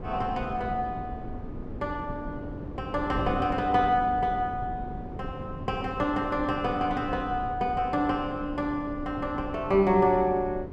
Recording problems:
wind on the microphone; below 310 Hz, SNR 11 dB

